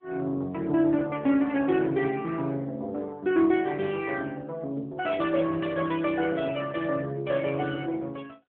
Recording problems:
phone line; 190 Hz to 3.3 kHz, AMR-NB

